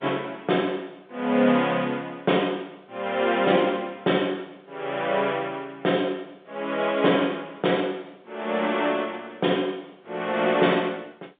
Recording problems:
telephone audio; 260 Hz to 3.6 kHz, G.711

